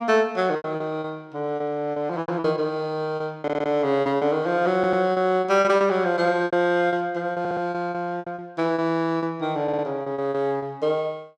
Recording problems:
packet loss; 12% of the sound replaced, filled with repeated pitch periods
audio stuttering; 4 times, first at 3.5 s

